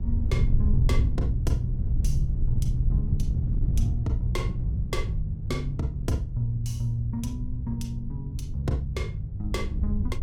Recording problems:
wind on the microphone; below 90 Hz, SNR -2 dB

